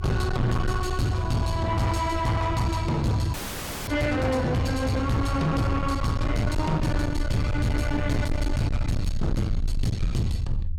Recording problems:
distortion; soft clipping, signal-to-distortion ratio 7 dB
low-frequency rumble; below 82 Hz, SNR 5 dB
audio freezing; at 3.5 s for 0.5 s

